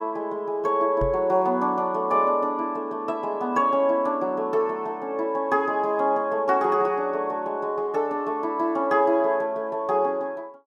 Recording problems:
knock on the microphone; at 1 s; peak -3 dB vs average level

